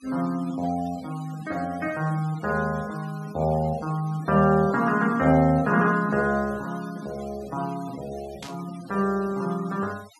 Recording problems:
noise reduction artefacts; signal-to-artefact ratio 22 dB
burst of static; at 8.5 s; peak -9 dB vs average level

